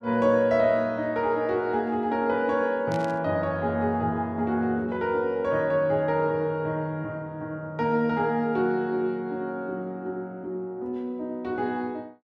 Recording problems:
burst of static; at 3 s; peak -11 dB vs average level

